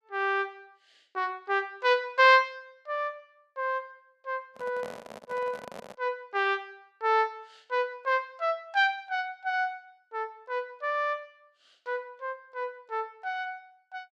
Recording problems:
handling noise; from 4.5 to 6 s; peak -9 dB vs average level

